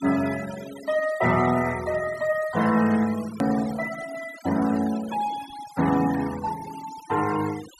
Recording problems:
noise reduction artefacts; signal-to-artefact ratio 15 dB
edit click; at 3.5 s

